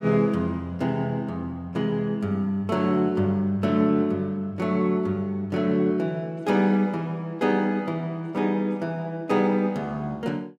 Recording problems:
none

